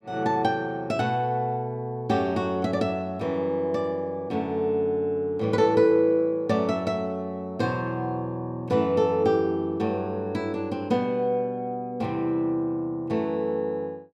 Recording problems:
none

